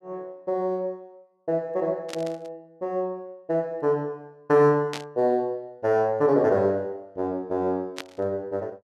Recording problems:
burst of static; at 2 s, at 5 s and at 8 s; peak -4 dB vs average level

